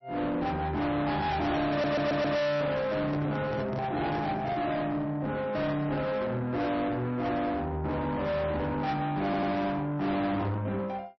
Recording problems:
lossy compression; MP3, log-spectral distance 2 dB, nothing above 5.8 kHz
distortion; soft clipping, signal-to-distortion ratio 6 dB
audio stuttering; at 1.5 s and at 9 s
microphone handling noise; from 3 to 4.5 s; peak 0 dB vs average level

